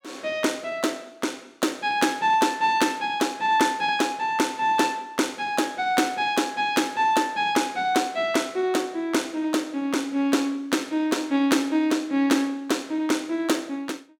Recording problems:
none

